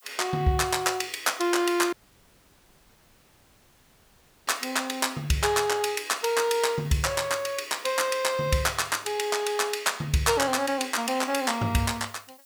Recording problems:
background hiss; slope +6 dB per octave, SNR 26 dB
audio cutting out; at 2 s for 2.5 s

